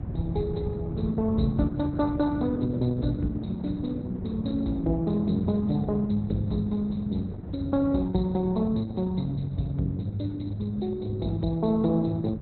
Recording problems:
codec artefacts; Opus, log-spectral distance 3 dB, nothing above 4.1 kHz
rumble; below 180 Hz, SNR 7 dB

